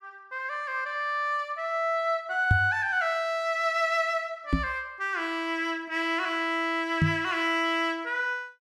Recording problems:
microphone bump; at 2.5 s, at 4.5 s and at 7 s; peak +7 dB vs average level

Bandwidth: 14.5 kHz